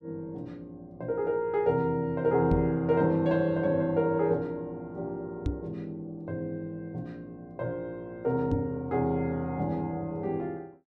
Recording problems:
microphone thump; at 2.5 s, at 5.5 s and at 8.5 s; peak +3 dB vs average level

